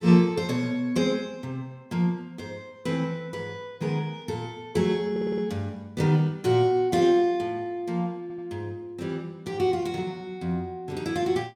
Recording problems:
audio stuttering; at 5 s and at 8 s

